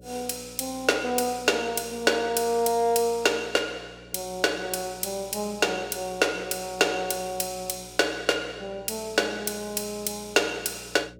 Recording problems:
hum; 60 Hz, harmonics up to 600 Hz, SNR 23 dB

